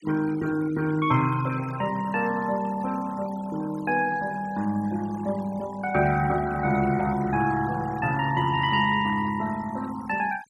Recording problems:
denoising artefacts; signal-to-artefact ratio 17 dB

